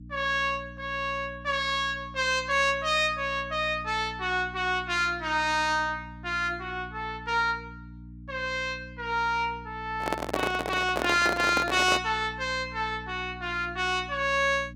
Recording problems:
electrical hum; 60 Hz, harmonics up to 300 Hz, SNR 17 dB
handling noise; from 10 to 12 s; peak +3 dB vs average level

